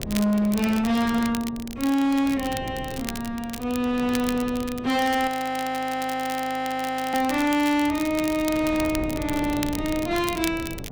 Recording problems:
distorted audio; hard clipping, signal-to-distortion ratio 12 dB
wind on the microphone; below 360 Hz, SNR 14 dB
crackle; vinyl, SNR 13 dB
frozen audio; at 5.5 s for 2 s

